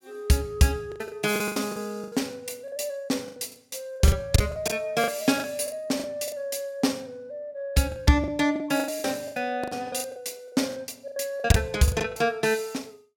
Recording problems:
lost packets; 14% of the sound replaced, filled with the last packet

